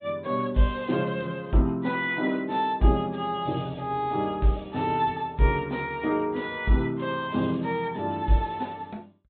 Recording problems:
treble missing; nothing above 3.7 kHz
codec artefacts; MP3, log-spectral distance 2 dB

